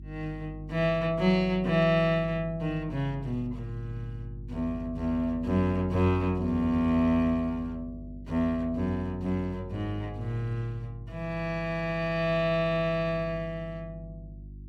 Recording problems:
mains hum; 50 Hz, harmonics up to 350 Hz, SNR 15 dB

